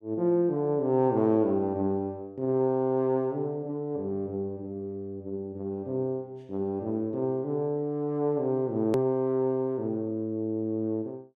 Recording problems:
click at an edit; at 9 s

